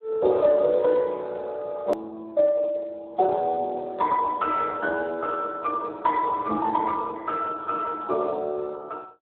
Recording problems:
telephone audio; 340 Hz to 2 kHz, Speex
hard cut with a click; at 2 s

